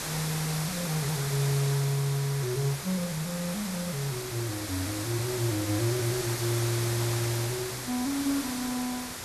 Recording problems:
hiss; slope -2 dB per octave, SNR 3 dB

